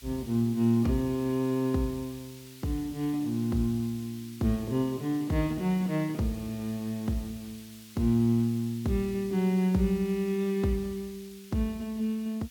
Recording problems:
hiss; SNR 20 dB

